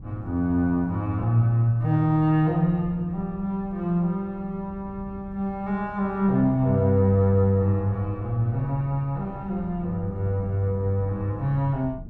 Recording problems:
wind noise; below 160 Hz, SNR 18 dB

